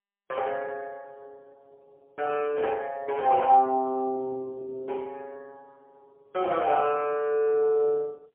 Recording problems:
telephone audio; 300 Hz to 2.2 kHz, AMR-NB, then MP3

